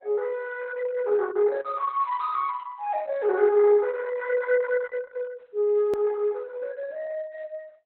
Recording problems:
codec artefacts; Opus, log-spectral distance 2 dB, nothing above 18.9 kHz
edit click; at 6 s

